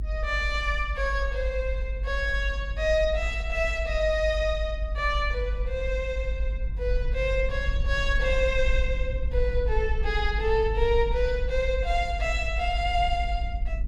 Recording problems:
rumble; below 56 Hz, strongest tone 48 Hz, SNR 3 dB

